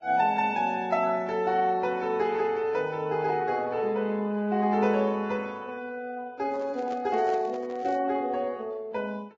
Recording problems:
codec artefacts; Vorbis, log-spectral distance 2 dB
handling noise; from 6.5 to 8 s; peak -8 dB vs average level

